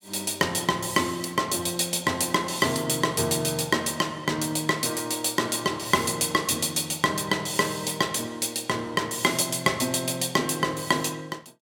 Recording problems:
none

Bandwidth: 17 kHz